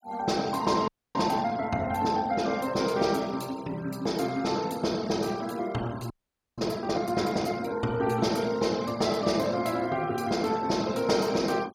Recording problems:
noise reduction artefacts; signal-to-artefact ratio 19 dB
audio freezing; at 1 s and at 6 s

